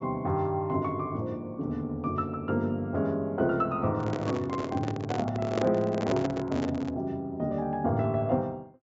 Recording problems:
treble missing; nothing above 8 kHz
handling noise; from 4 to 7 s; peak +4 dB vs average level

